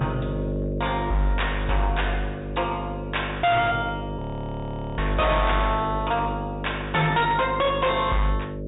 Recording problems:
low-pass filter; nothing above 4 kHz
distorted audio; hard clipping, signal-to-distortion ratio 8 dB
hum; 50 Hz, harmonics up to 600 Hz, SNR 7 dB
frozen audio; at 4 s for 1 s

